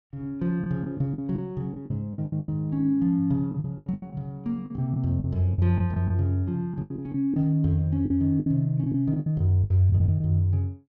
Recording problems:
packet loss; 13% of the sound replaced, filled with the last packet

